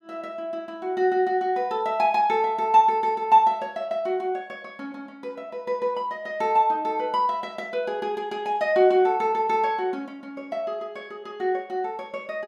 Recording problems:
none

